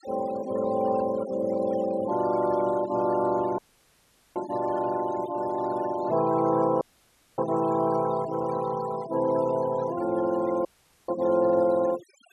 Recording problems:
noise reduction artefacts; signal-to-artefact ratio 16 dB
audio cutting out; at 3.5 s for 1 s, at 7 s for 0.5 s and at 11 s

